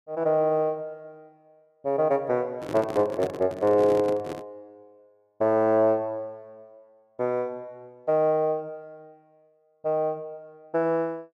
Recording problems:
handling noise; from 2.5 to 4.5 s; peak -4 dB vs average level

